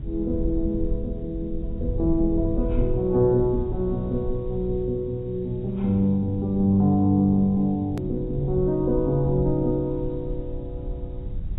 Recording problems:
lossy compression; AAC, log-spectral distance 2 dB, nothing above 13.1 kHz
background hiss; SNR 42 dB
low-frequency rumble; below 78 Hz, SNR 10 dB
click at an edit; at 8 s

